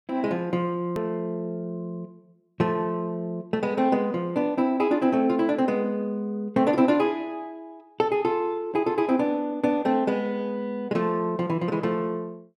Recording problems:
edit click; at 1 s

